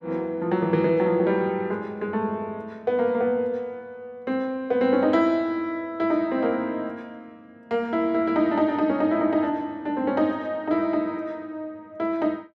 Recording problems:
none

